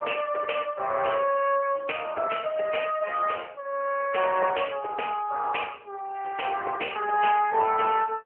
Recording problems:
phone line; 370 Hz to 3 kHz, AMR-NB

